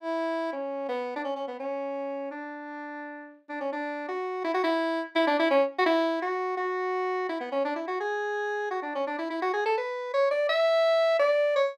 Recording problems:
none

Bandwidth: 16 kHz